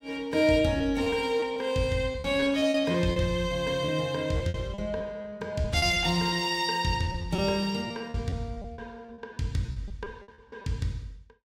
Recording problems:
packet loss; 11% of the sound replaced, filled with repeated pitch periods

